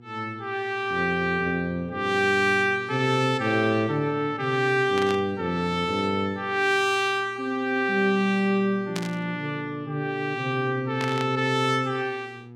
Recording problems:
hum; 60 Hz, harmonics up to 840 Hz, SNR 21 dB
burst of static; at 5 s, at 9 s and at 11 s; peak -4 dB vs average level

